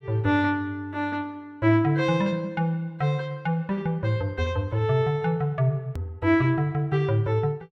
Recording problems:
edit click; at 6 s

